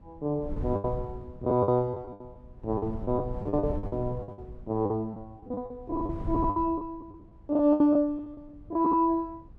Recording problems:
wind noise; below 120 Hz, SNR 12 dB
lost packets; 16% of the sound replaced, filled with the last packet

